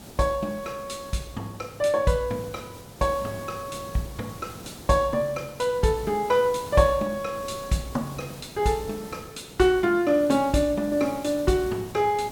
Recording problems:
hiss; SNR 17 dB

